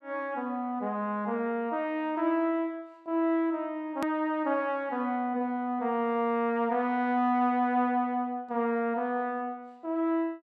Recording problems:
click at an edit; at 4 s

